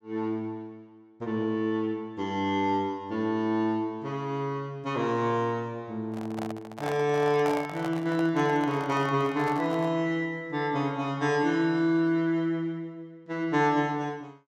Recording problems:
handling noise; from 6 to 10 s; peak -3 dB vs average level

